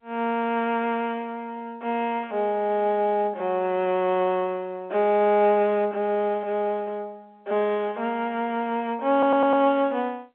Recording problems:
telephone audio; 190 Hz to 3.5 kHz, G.711
stutter; at 9 s

